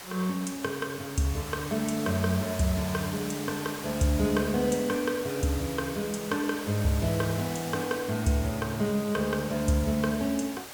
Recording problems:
background hiss; SNR 10 dB

